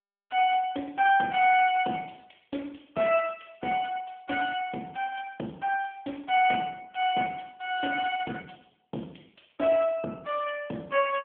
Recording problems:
telephone audio; 240 Hz to 3.3 kHz, AMR-NB

